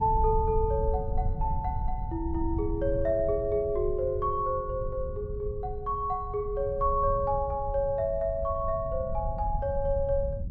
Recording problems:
low-frequency rumble; below 88 Hz, SNR 6 dB

